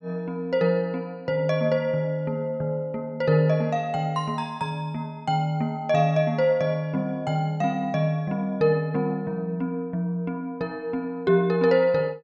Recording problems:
none

